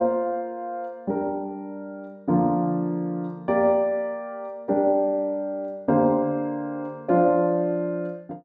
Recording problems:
none

